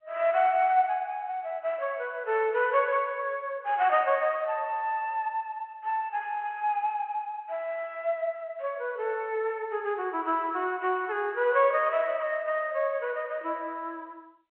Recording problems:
phone line; 280 Hz to 3.3 kHz, G.711

